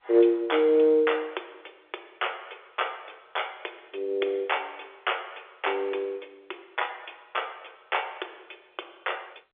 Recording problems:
telephone audio; 320 Hz to 3.5 kHz, G.711

